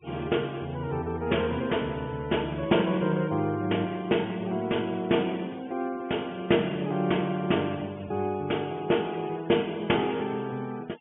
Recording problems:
low-pass filter; nothing above 3.3 kHz
noise reduction artefacts; signal-to-artefact ratio 23 dB

